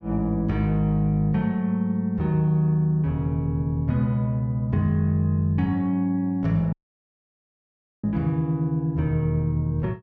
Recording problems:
audio cutting out; at 6.5 s for 1.5 s

